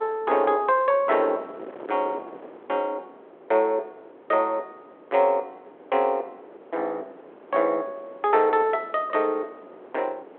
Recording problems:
phone line; 320 Hz to 3.5 kHz, G.726
wind on the microphone; below 730 Hz, SNR 20 dB

